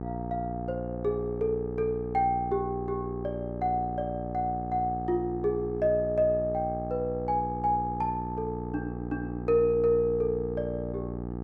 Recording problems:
hum; 60 Hz, harmonics up to 1.3 kHz, SNR 7 dB

